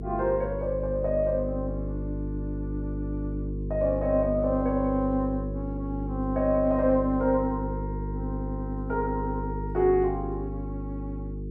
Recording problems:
electrical hum; 50 Hz, harmonics up to 450 Hz, SNR 5 dB

